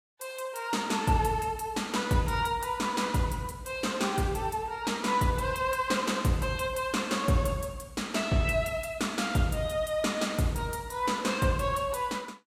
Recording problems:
lossy compression; Vorbis, log-spectral distance 3 dB, nothing above 15.1 kHz

